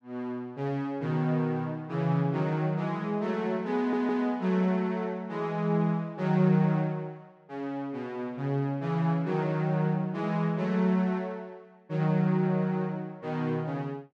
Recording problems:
stutter; at 4 s

